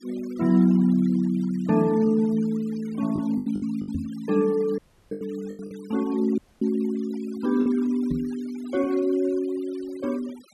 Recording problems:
denoising artefacts; signal-to-artefact ratio 24 dB
packet loss; 5% of the sound replaced, filled with the last packet
microphone thump; at 4 s and at 8 s; peak -2 dB vs average level
audio cutting out; at 5 s and at 6.5 s

